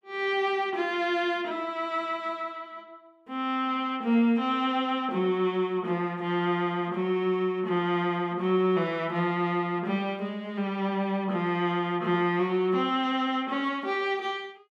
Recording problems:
none

